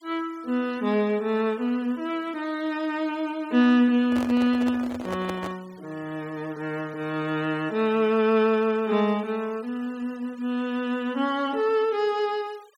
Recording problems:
noise reduction artefacts; signal-to-artefact ratio 25 dB
handling noise; from 4 to 5.5 s; peak -4 dB vs average level

